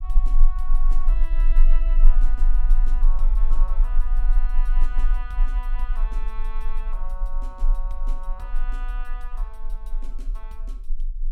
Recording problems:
rumble; below 30 Hz, strongest tone 20 Hz, SNR -17 dB

